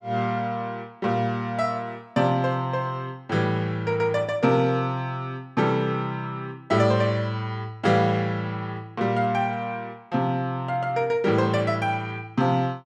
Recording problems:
none

